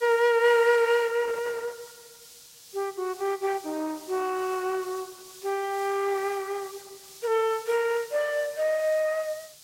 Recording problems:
codec artefacts; Opus, log-spectral distance 3 dB, nothing above 16 kHz
background hiss; SNR 19 dB

